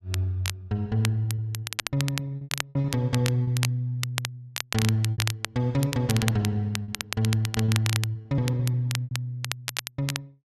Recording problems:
crackle; vinyl, SNR 6 dB
packet loss; 9% of the sound replaced, filled with repeated pitch periods

